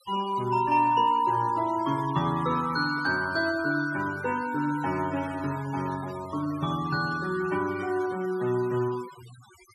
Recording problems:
denoising artefacts; signal-to-artefact ratio 17 dB

